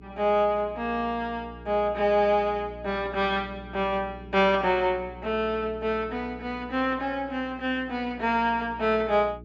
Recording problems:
treble missing; nothing above 8 kHz
electrical hum; 60 Hz, harmonics up to 420 Hz, SNR 19 dB

